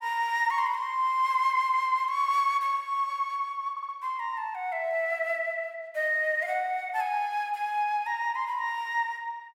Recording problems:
stutter; at 3.5 s

